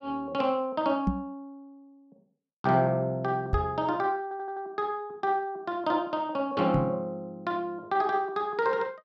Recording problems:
knock on the microphone; at 1 s, at 3.5 s and at 6.5 s; peak +5 dB vs average level
stutter; at 4 s

